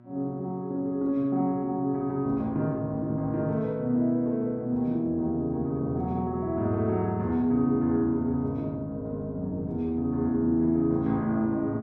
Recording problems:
hum; 60 Hz, harmonics up to 1.3 kHz, SNR 26 dB

